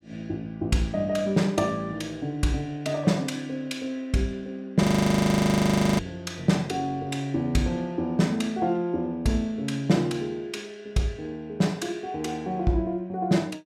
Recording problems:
frozen audio; at 5 s for 1 s

